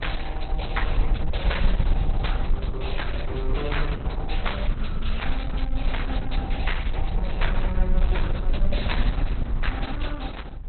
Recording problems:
codec artefacts; Opus, log-spectral distance 4 dB, nothing above 4.1 kHz
low-frequency rumble; below 50 Hz, SNR -5 dB

